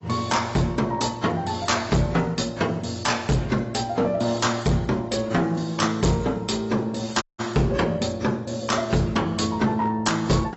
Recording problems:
lossy compression; AAC, log-spectral distance 5 dB, nothing above 7.8 kHz
distorted audio; hard clipping, signal-to-distortion ratio 7 dB
audio cutting out; at 7 s

